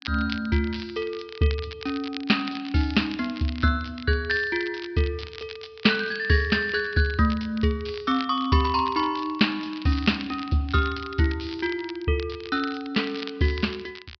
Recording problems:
treble missing; nothing above 5.5 kHz
crackle; vinyl, SNR 16 dB

